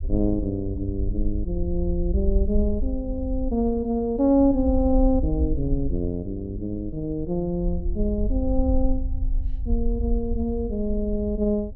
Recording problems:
rumble; below 60 Hz, SNR 4 dB

